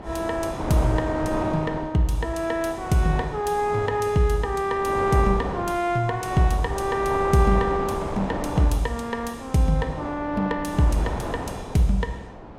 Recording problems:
wind on the microphone; below 890 Hz, SNR 9 dB

